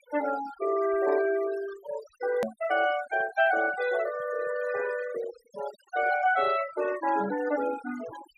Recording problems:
noise reduction artefacts; signal-to-artefact ratio 14 dB
hard cut with a click; at 2.5 s

